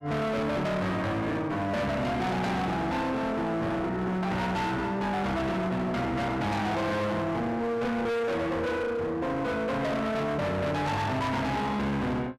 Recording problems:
distorted audio; hard clipping, signal-to-distortion ratio 6 dB

